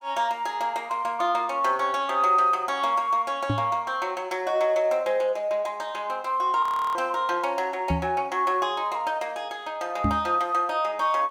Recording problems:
microphone thump; at 3.5 s, at 8 s and at 10 s; peak +3 dB vs average level
audio freezing; at 6.5 s

